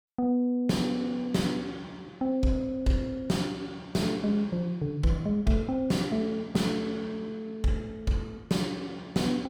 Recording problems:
distorted audio; soft clipping, signal-to-distortion ratio 10 dB

